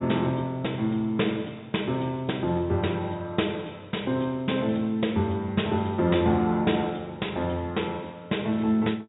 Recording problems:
treble cut off; nothing above 4 kHz

